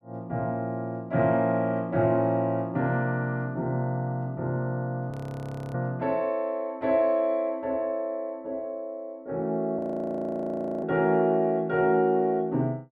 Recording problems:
audio freezing; at 5 s for 0.5 s and at 10 s for 1 s

